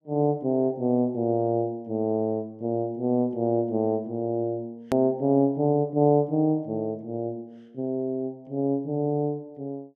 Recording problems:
click at an edit; at 5 s

